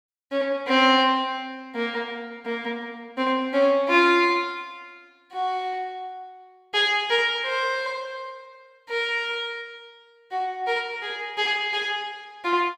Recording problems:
none

